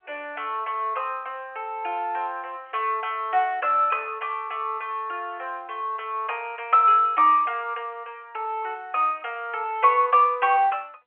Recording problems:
telephone audio; 370 Hz to 3.2 kHz, G.711

